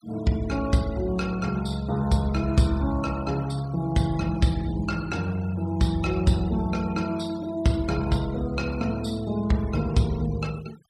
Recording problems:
denoising artefacts; signal-to-artefact ratio 21 dB

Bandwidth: 15 kHz